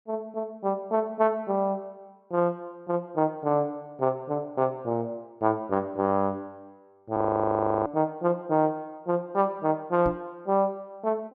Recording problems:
frozen audio; at 7 s for 0.5 s
microphone bump; at 10 s; peak -2 dB vs average level

